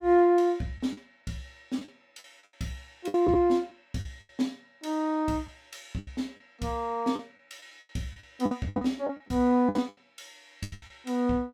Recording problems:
packet loss; 12% of the sound replaced, filled with the last packet

